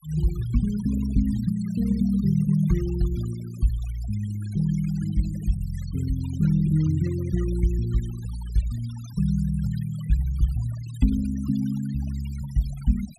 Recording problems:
denoising artefacts; signal-to-artefact ratio 21 dB

